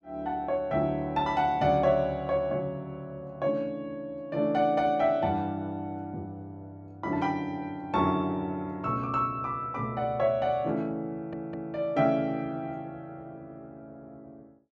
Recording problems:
stutter; at 11 s

